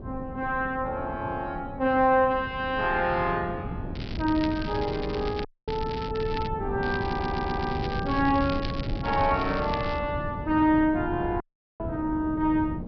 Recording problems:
treble missing; nothing above 5.5 kHz
wind noise; below 250 Hz, SNR 8 dB
crackling; from 4 to 6.5 s and from 7 to 10 s; loose cable, SNR 15 dB
dropout; at 5.5 s and at 11 s
stutter; at 7 s

